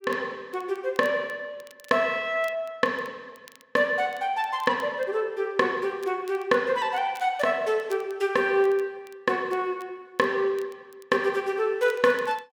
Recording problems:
crackle; vinyl, SNR 28 dB

